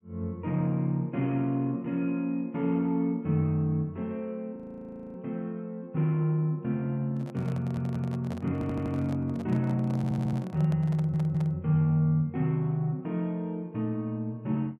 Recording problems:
audio freezing; at 4.5 s for 0.5 s
microphone handling noise; from 7 to 12 s; peak -10 dB vs average level
audio stuttering; 4 times, first at 7.5 s

